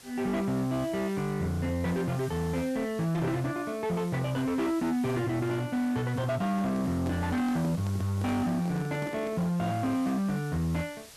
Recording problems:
distortion; hard clipping, signal-to-distortion ratio 10 dB
background hiss; slope 0 dB per octave, SNR 20 dB
handling noise; from 6 to 9.5 s; peak -4 dB vs average level

